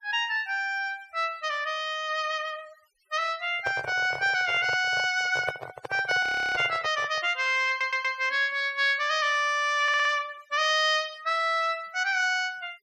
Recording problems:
denoising artefacts; signal-to-artefact ratio 25 dB
microphone handling noise; from 3.5 to 7 s; peak -2 dB vs average level
frozen audio; at 6 s
stutter; at 7.5 s and at 10 s

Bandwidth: 14.5 kHz